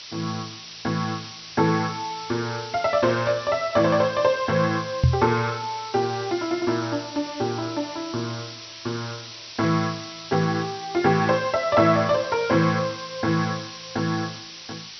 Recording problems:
treble cut off; nothing above 5.9 kHz
background hiss; slope +4 dB per octave, SNR 13 dB
knock on the microphone; at 5 s; peak +8 dB vs average level

